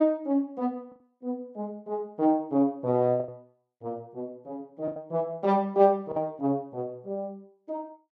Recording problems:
packet loss; 3% of the sound replaced, filled with the last packet

